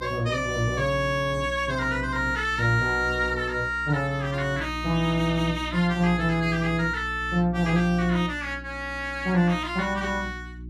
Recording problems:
electrical hum; 60 Hz, harmonics up to 360 Hz, SNR 13 dB

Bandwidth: 14.5 kHz